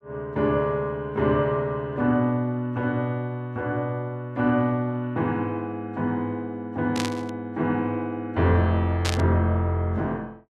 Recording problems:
burst of static; at 7 s and at 9 s; peak +1 dB vs average level

